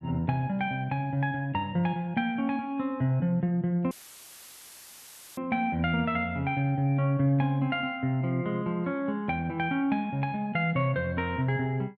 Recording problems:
dropout; at 4 s for 1.5 s; filled with static

